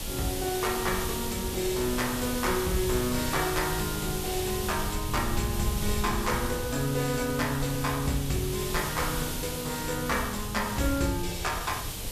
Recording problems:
hiss; SNR 5 dB
rumble; below 110 Hz, SNR 8 dB

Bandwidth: 14.5 kHz